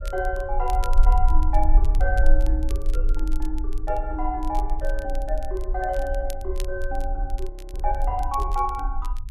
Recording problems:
rumble; below 42 Hz, strongest tone 18 Hz, SNR -2 dB
crackle; vinyl, SNR 19 dB
audio freezing; at 7.5 s

